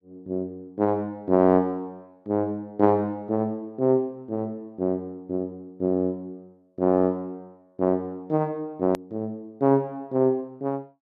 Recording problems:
click at an edit; at 9 s

